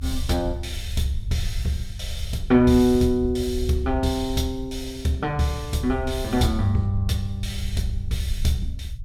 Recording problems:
rumble; below 72 Hz, SNR 9 dB

